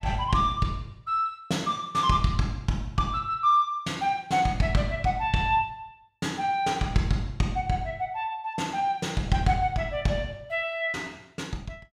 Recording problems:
none

